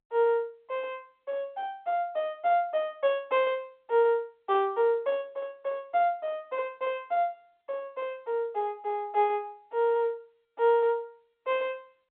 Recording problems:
phone line; 300 Hz to 3.6 kHz, G.711

